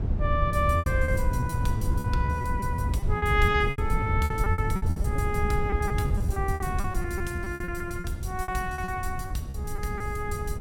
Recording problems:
low-frequency rumble; below 110 Hz, SNR -1 dB
lost packets; 17% of the sound replaced, filled with repeated pitch periods

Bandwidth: 17.5 kHz